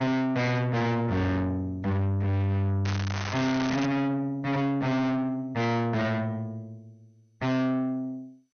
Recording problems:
lossy codec; MP2, log-spectral distance 2 dB, nothing above 6.3 kHz
distortion; soft clipping, signal-to-distortion ratio 6 dB
crackle; from 3 to 4 s; loose cable, SNR 8 dB

